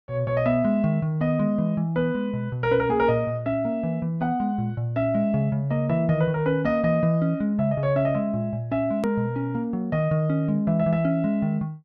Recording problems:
low-pass filter; nothing above 6.2 kHz
click at an edit; at 9 s

